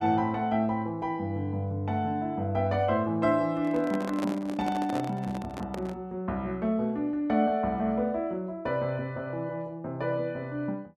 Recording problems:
handling noise; from 3.5 to 6 s; peak -1 dB vs average level

